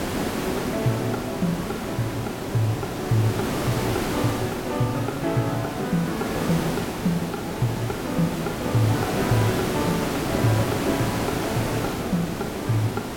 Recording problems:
hiss; slope -6 dB per octave, SNR 2 dB

